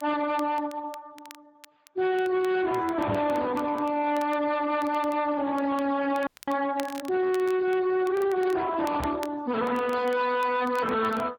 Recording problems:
codec artefacts; MP3, then Speex, log-spectral distance 4 dB
distorted audio; hard clipping, uneven, signal-to-distortion ratio 7 dB
crackling; vinyl, SNR 23 dB
knock on the microphone; at 3 s and at 9 s; peak +2 dB vs average level
audio freezing; at 6.5 s

